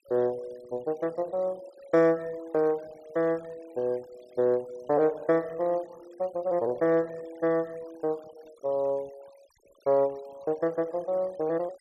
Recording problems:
noise reduction artefacts; signal-to-artefact ratio 26 dB

